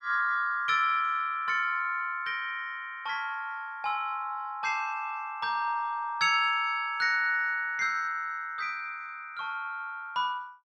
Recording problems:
none

